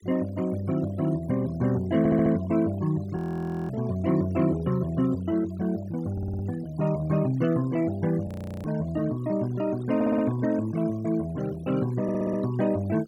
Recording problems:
noise reduction artefacts; signal-to-artefact ratio 19 dB
stutter; 4 times, first at 2 s
audio freezing; at 3 s for 0.5 s and at 8.5 s

